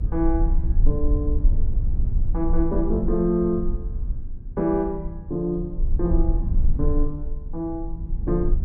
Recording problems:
hum; 50 Hz, harmonics up to 400 Hz, SNR 20 dB
low-frequency rumble; below 52 Hz, strongest tone 24 Hz, SNR 0 dB

